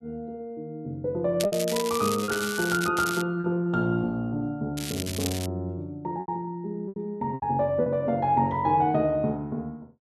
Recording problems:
lost packets; 4% of the sound replaced, filled with repeated pitch periods
crackling; from 1.5 to 3 s, at 3 s and at 5 s; loose cable, SNR 7 dB

